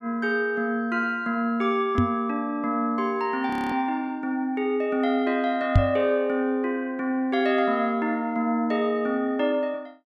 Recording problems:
microphone bump; at 2 s and at 6 s; peak +9 dB vs average level
frozen audio; at 3.5 s

